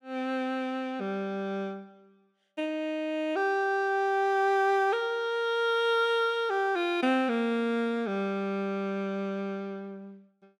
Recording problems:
none

